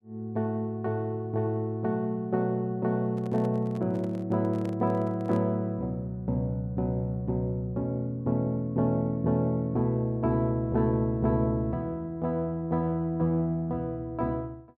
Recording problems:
handling noise; from 3 to 5.5 s; peak -9 dB vs average level

